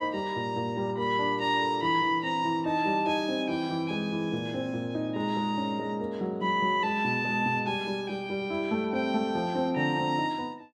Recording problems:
none

